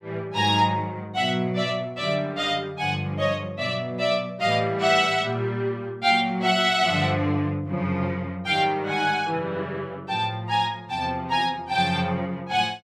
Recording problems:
none

